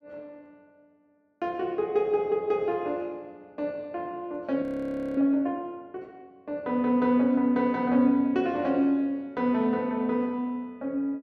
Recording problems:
audio freezing; at 4.5 s for 0.5 s

